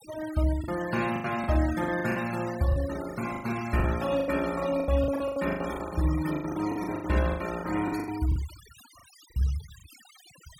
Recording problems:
noise reduction artefacts; signal-to-artefact ratio 14 dB
lost packets; 17% of the sound replaced, filled with the last packet

